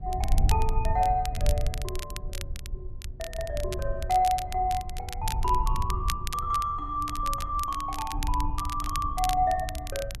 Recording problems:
wind noise; below 74 Hz, SNR 4 dB
crackle; vinyl, SNR 11 dB

